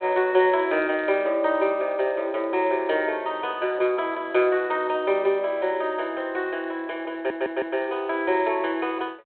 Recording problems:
phone line; 340 Hz to 3.3 kHz, G.726
stutter; at 7 s

